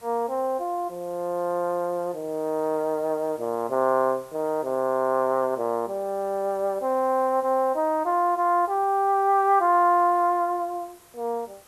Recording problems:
background hiss; slope -2 dB per octave, SNR 27 dB

